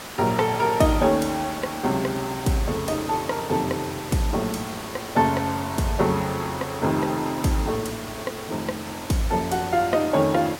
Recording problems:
hiss; slope -3 dB per octave, SNR 11 dB

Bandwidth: 16.5 kHz